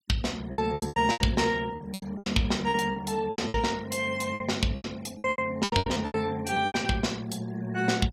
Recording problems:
denoising artefacts; signal-to-artefact ratio 22 dB
packet loss; 17% of the sound replaced, filled with repeated pitch periods

